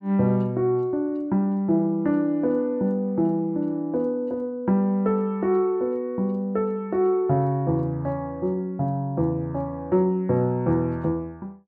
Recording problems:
none

